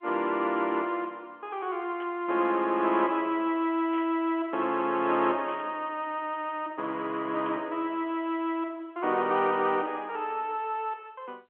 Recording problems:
phone line; 260 Hz to 3.5 kHz, G.711
burst of static; 4 times, first at 2 s; peak -14 dB vs average level

